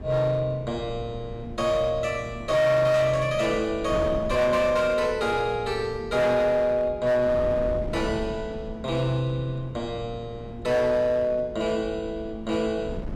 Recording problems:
distortion; hard clipping, signal-to-distortion ratio 12 dB
wind noise; below 270 Hz, SNR 14 dB

